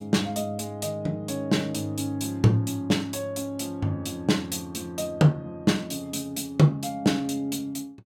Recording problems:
none

